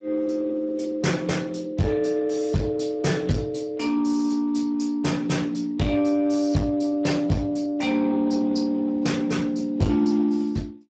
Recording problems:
codec artefacts; Speex, log-spectral distance 3 dB, nothing above 7.6 kHz
distorted audio; soft clipping, signal-to-distortion ratio 7 dB

